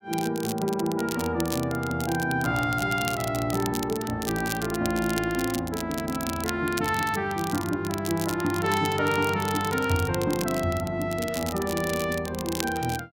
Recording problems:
crackling; vinyl, SNR 10 dB

